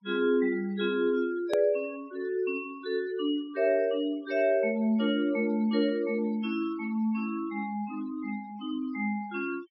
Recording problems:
treble missing; nothing above 5.6 kHz
noise reduction artefacts; signal-to-artefact ratio 23 dB
click at an edit; at 1.5 s

